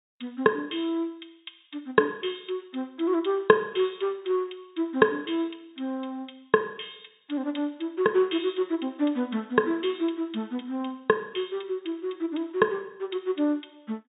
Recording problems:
treble cut off; nothing above 4 kHz

